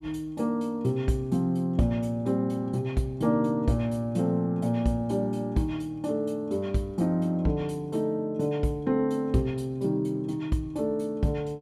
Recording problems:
none

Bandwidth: 15 kHz